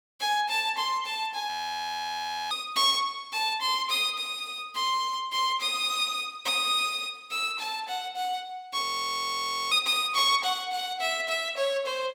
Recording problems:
audio freezing; at 1.5 s for 1 s and at 9 s for 1 s

